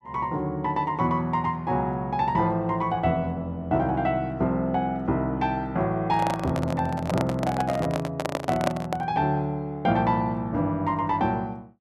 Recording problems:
microphone handling noise; from 6 to 9 s; peak +5 dB vs average level

